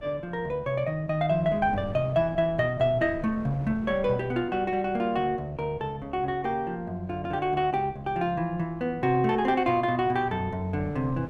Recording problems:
wind on the microphone; below 320 Hz, SNR 18 dB

